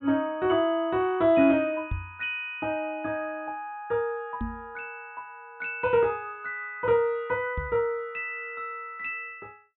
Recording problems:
low-pass filter; nothing above 4 kHz
knock on the microphone; at 2 s, at 4.5 s and at 7.5 s; peak -1 dB vs average level

